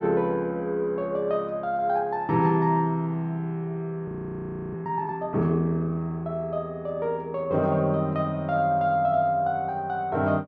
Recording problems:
audio freezing; at 4 s for 0.5 s

